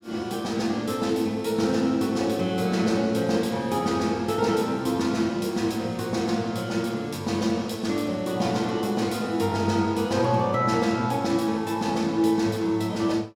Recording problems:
none

